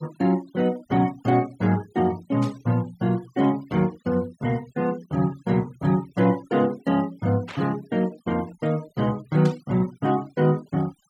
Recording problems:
noise reduction artefacts; signal-to-artefact ratio 23 dB
burst of static; at 2.5 s, at 7.5 s and at 9.5 s; peak -10 dB vs average level

